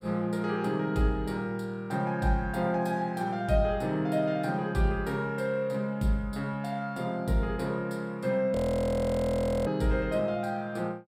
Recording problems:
audio freezing; at 8.5 s for 1 s

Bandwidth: 16 kHz